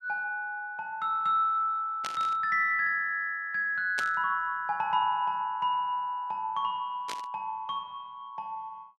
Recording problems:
burst of static; at 2 s, at 4 s and at 7 s; peak -3 dB vs average level

